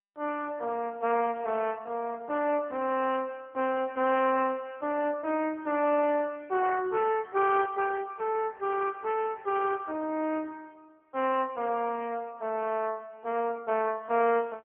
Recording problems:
telephone audio; 260 Hz to 3.2 kHz, AMR-NB

